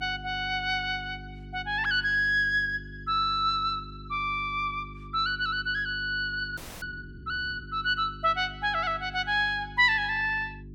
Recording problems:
electrical hum; 50 Hz, harmonics up to 400 Hz, SNR 17 dB
frozen audio; at 6.5 s

